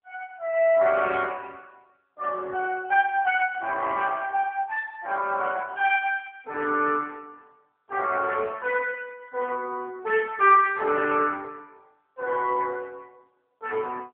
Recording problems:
telephone audio; 260 Hz to 3.5 kHz, AMR-NB

